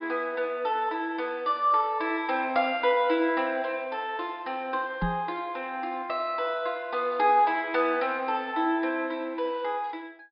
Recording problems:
treble missing; nothing above 5.5 kHz
microphone thump; at 5 s; peak +1 dB vs average level

